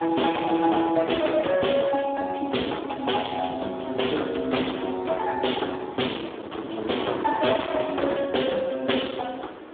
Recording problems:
telephone audio; 260 Hz to 3.6 kHz, Speex
distortion; hard clipping, signal-to-distortion ratio 10 dB
wind noise; below 1.1 kHz, SNR 17 dB

